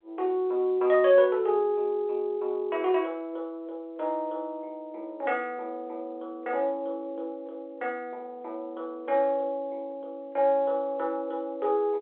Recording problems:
phone line; 340 Hz to 3.6 kHz, G.711

